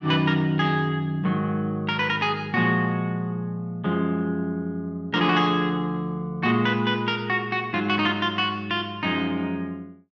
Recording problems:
none

